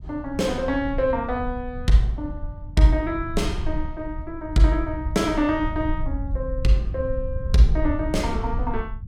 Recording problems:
low-frequency rumble; below 76 Hz, SNR 8 dB

